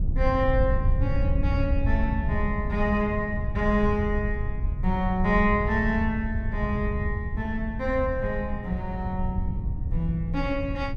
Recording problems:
wind noise; below 94 Hz, SNR 2 dB

